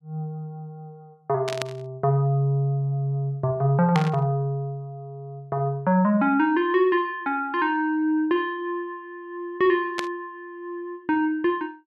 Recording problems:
burst of static; at 1.5 s, at 4 s and at 10 s; peak 0 dB vs average level

